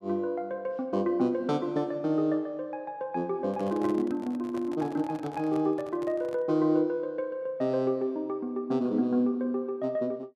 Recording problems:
microphone handling noise; from 3.5 to 6.5 s; peak -9 dB vs average level

